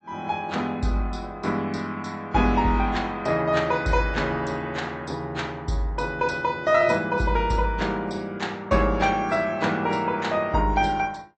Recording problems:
low-pass filter; nothing above 8 kHz
codec artefacts; AAC, log-spectral distance 2 dB

